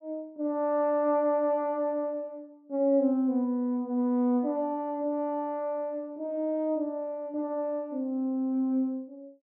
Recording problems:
none

